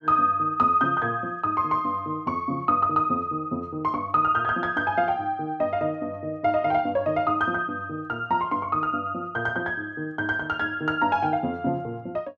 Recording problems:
none

